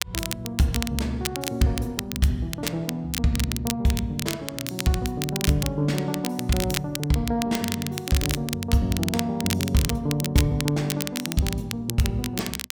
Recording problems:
crackling; vinyl, SNR 6 dB

